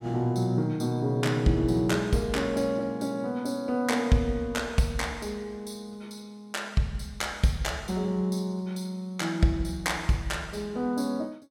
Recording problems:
none

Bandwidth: 16.5 kHz